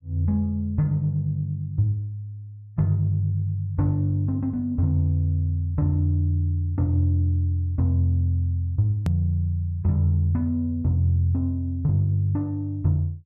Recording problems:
click at an edit; at 9 s

